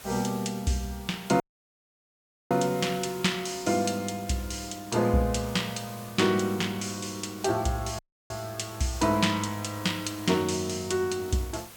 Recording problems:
background hiss; slope -1 dB per octave, SNR 17 dB
dropout; at 1.5 s for 1 s and at 8 s

